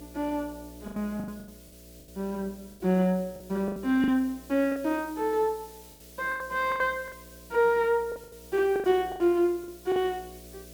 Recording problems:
hum; 60 Hz, harmonics up to 660 Hz, SNR 23 dB
background hiss; slope +4 dB per octave, SNR 23 dB
packet loss; 12% of the sound replaced, filled with the last packet

